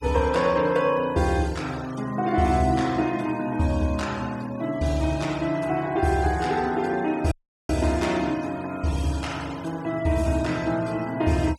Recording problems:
denoising artefacts; signal-to-artefact ratio 20 dB
dropout; at 7.5 s

